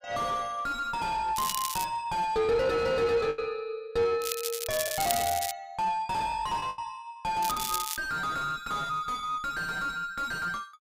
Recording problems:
distorted audio; soft clipping, signal-to-distortion ratio 3 dB
lost packets; 2% of the sound replaced, filled with the last packet
crackle; at 1.5 s, from 4 to 5.5 s and at 7.5 s; loose cable, SNR 4 dB

